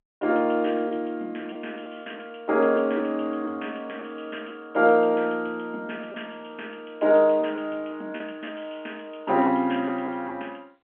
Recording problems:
phone line; 240 Hz to 3.3 kHz, G.711
lost packets; 4% of the sound replaced, filled with repeated pitch periods

